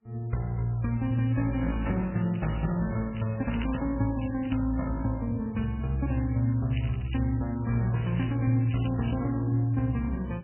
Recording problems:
codec artefacts; MP3, log-spectral distance 7 dB, nothing above 2.5 kHz
crackle; from 2 to 4.5 s and from 6 to 9.5 s; loose cable, SNR 19 dB

